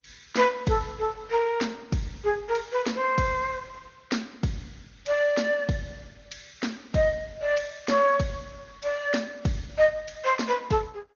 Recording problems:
codec artefacts; MP2, then Opus, log-spectral distance 5 dB, nothing above 6.7 kHz

